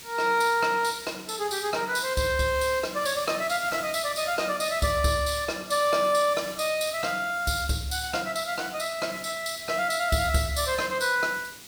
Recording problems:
background hiss; SNR 15 dB

